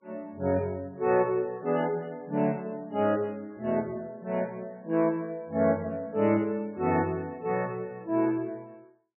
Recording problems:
codec artefacts; MP3, log-spectral distance 2 dB, nothing above 2.6 kHz

